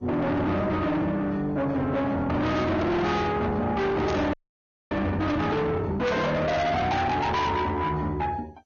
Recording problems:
lossy compression; Vorbis, then MP2, log-spectral distance 2 dB, nothing above 6.7 kHz
distortion; soft clipping, signal-to-distortion ratio 6 dB
static burst; at 4 s and at 6 s; peak -6 dB vs average level
audio freezing; at 4.5 s for 0.5 s

